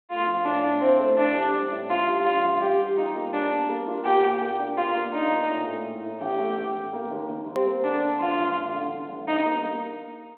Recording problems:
phone line; 260 Hz to 3.7 kHz, G.726
hard cut with a click; at 7.5 s

